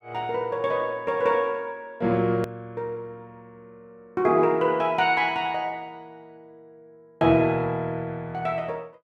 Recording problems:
click at an edit; at 2.5 s

